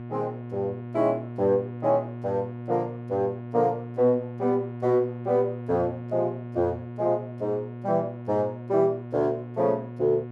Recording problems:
hum; 60 Hz, harmonics up to 1.4 kHz, SNR 10 dB

